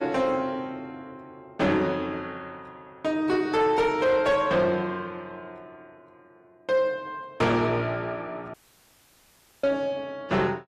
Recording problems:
lossy compression; AAC, log-spectral distance 2 dB
distortion; soft clipping, signal-to-distortion ratio 12 dB
dropout; at 8.5 s for 1 s

